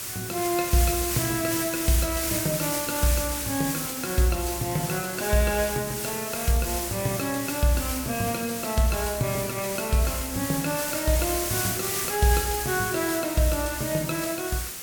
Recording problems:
background hiss; SNR 3 dB

